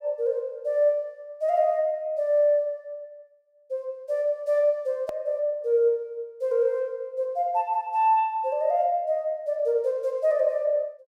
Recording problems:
edit click; at 5 s

